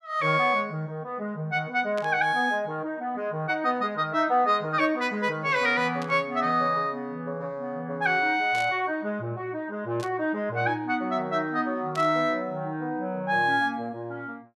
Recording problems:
static burst; 5 times, first at 2 s; peak -9 dB vs average level

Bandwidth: 13 kHz